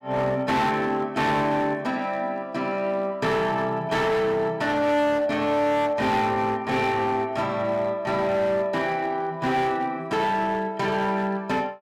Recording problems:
distorted audio; hard clipping, signal-to-distortion ratio 11 dB

